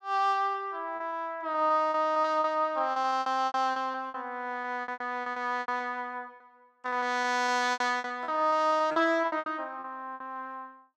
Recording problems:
packet loss; 15% of the sound replaced, filled with repeated pitch periods

